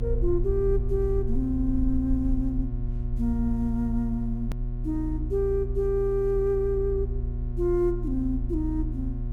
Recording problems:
hum; 60 Hz, harmonics up to 720 Hz, SNR 8 dB
rumble; below 62 Hz, strongest tone 36 Hz, SNR 5 dB
hard cut with a click; at 4.5 s

